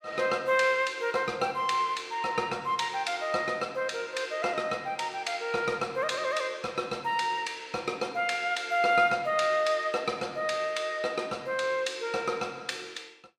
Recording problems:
none

